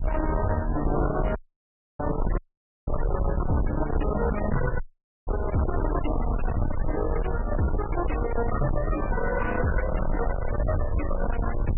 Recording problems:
lossy codec; MP3, log-spectral distance 4 dB, nothing above 2.8 kHz
distorted audio; soft clipping, signal-to-distortion ratio 6 dB
rumble; below 210 Hz, SNR 2 dB
audio cutting out; at 1.5 s for 0.5 s, at 2.5 s and at 5 s

